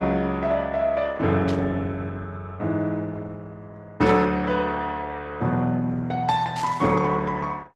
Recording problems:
lossy compression; Opus, log-spectral distance 3 dB, nothing above 12 kHz
burst of static; at 1.5 s, at 4 s and at 6.5 s; peak -9 dB vs average level

